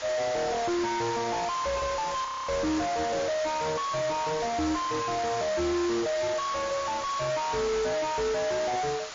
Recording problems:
lossy compression; MP3, log-spectral distance 9 dB, nothing above 6.2 kHz
distortion; soft clipping, signal-to-distortion ratio 4 dB
background hiss; SNR 9 dB
audio freezing; at 2.5 s

